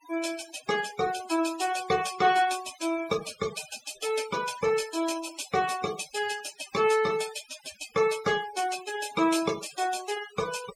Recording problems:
noise reduction artefacts; signal-to-artefact ratio 13 dB

